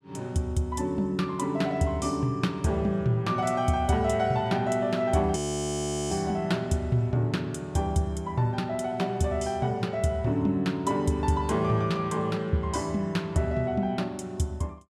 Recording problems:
audio freezing; at 5.5 s for 1 s

